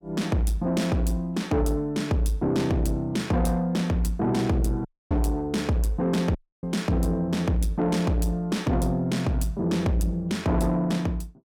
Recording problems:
distorted audio; soft clipping, signal-to-distortion ratio 11 dB
dropout; at 5 s and at 6.5 s

